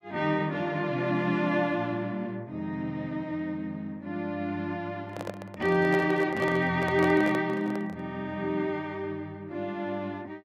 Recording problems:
handling noise; from 5 to 8 s; peak -1 dB vs average level

